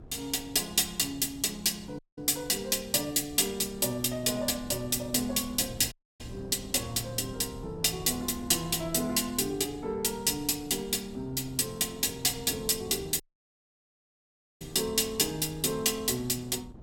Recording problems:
wind noise; below 270 Hz, SNR 19 dB
dropout; at 2 s, at 6 s and at 13 s for 1.5 s

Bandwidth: 17 kHz